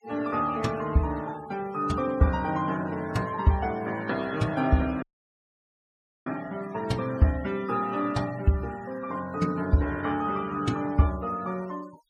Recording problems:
denoising artefacts; signal-to-artefact ratio 19 dB
audio cutting out; at 5 s for 1 s

